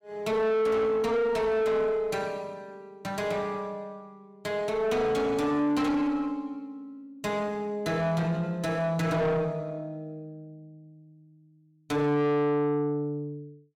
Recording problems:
distortion; soft clipping, signal-to-distortion ratio 6 dB

